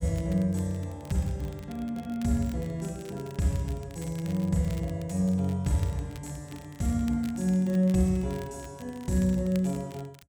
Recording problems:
crackle; vinyl, SNR 23 dB

